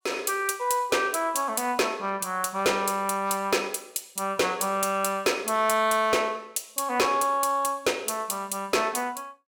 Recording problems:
distortion; hard clipping, signal-to-distortion ratio 12 dB

